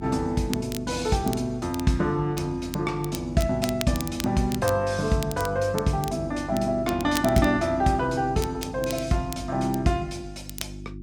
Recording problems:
hum; 50 Hz, harmonics up to 350 Hz, SNR 14 dB
crackling; vinyl, SNR 14 dB

